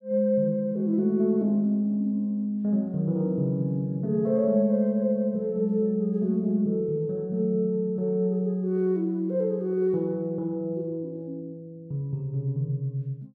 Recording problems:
none

